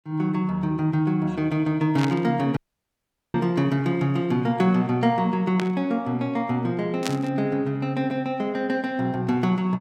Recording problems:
static burst; at 2 s, at 5.5 s and at 7 s; peak -1 dB vs average level
dropout; at 2.5 s for 1 s

